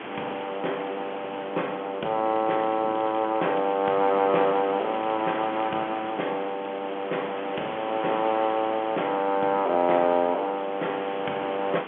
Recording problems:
telephone audio; 220 Hz to 3.3 kHz, G.711
background hiss; SNR 12 dB
wind noise; below 580 Hz, SNR 21 dB
crackle; from 2 to 5.5 s and at 8 s; loose cable, SNR 24 dB

